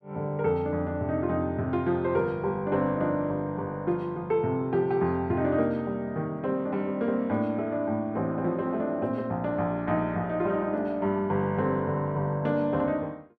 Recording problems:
none

